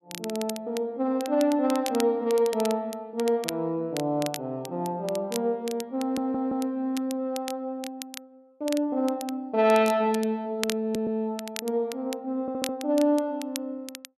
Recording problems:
crackling; vinyl, SNR 13 dB
stutter; at 6 s, at 11 s and at 12 s

